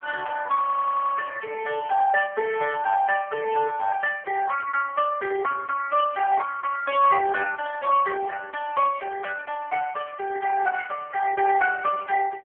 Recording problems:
telephone audio; 320 Hz to 3 kHz, AMR-NB
stutter; at 0.5 s

